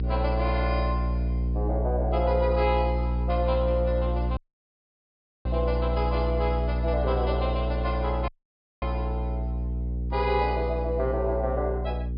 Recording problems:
low-pass filter; nothing above 5.1 kHz
mains hum; 60 Hz, harmonics up to 480 Hz, SNR 0 dB
dropout; at 4.5 s for 1 s and at 8.5 s for 0.5 s

